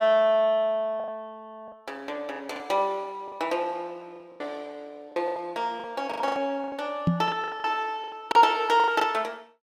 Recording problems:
packet loss; 12% of the sound replaced, filled with the last packet
microphone thump; at 7 s; peak +7 dB vs average level

